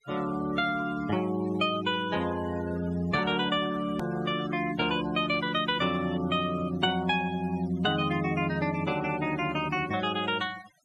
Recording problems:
noise reduction artefacts; signal-to-artefact ratio 15 dB
click at an edit; at 4 s

